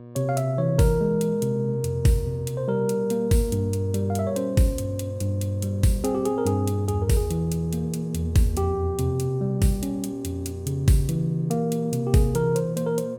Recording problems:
hum; 60 Hz, harmonics up to 1.2 kHz, SNR 18 dB

